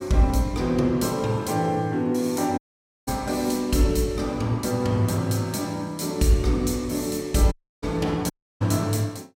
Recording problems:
audio cutting out; at 2.5 s, at 7.5 s and at 8.5 s

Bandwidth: 16 kHz